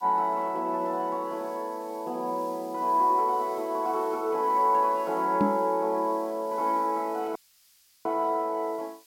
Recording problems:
background hiss; slope +6 dB per octave, SNR 26 dB
knock on the microphone; at 5.5 s; peak +5 dB vs average level
dropout; at 7.5 s for 0.5 s

